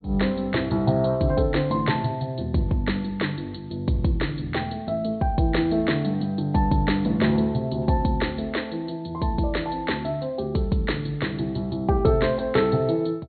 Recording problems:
treble missing; nothing above 4.3 kHz

